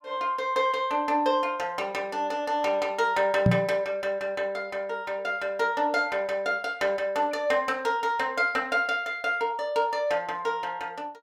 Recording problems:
microphone thump; at 3.5 s; peak +9 dB vs average level

